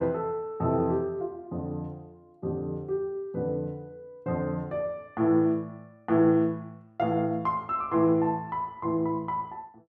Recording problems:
none

